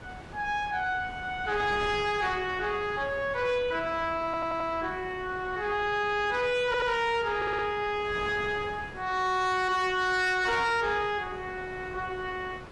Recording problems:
codec artefacts; AAC, log-spectral distance 2 dB, nothing above 11 kHz
distortion; soft clipping, signal-to-distortion ratio 12 dB
wind noise; below 1.2 kHz, SNR 16 dB
stutter; at 4.5 s, at 6.5 s and at 7.5 s

